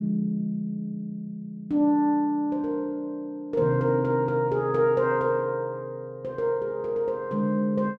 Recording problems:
none

